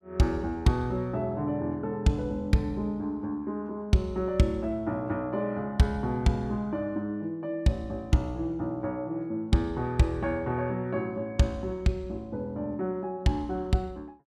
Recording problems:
none

